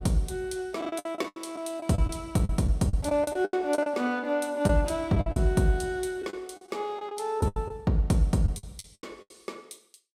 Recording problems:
lost packets; 13% of the sound replaced, filled with the last packet

